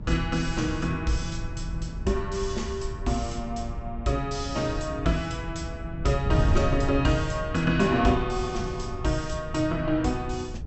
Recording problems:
treble cut off; nothing above 7.9 kHz
electrical hum; 60 Hz, harmonics up to 720 Hz, SNR 20 dB
wind noise; below 100 Hz, SNR 7 dB

